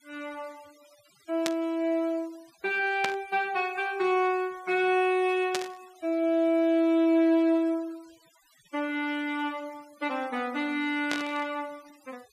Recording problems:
noise reduction artefacts; signal-to-artefact ratio 28 dB
burst of static; 4 times, first at 1.5 s; peak +1 dB vs average level

